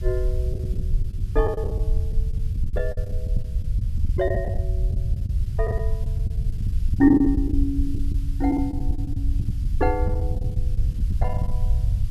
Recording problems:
background hiss; slope +2 dB per octave, SNR 28 dB
low-frequency rumble; below 86 Hz, SNR 0 dB
lost packets; 12% of the sound replaced, filled with the last packet

